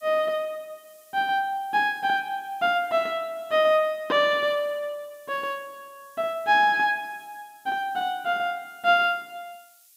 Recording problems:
hiss; SNR 29 dB

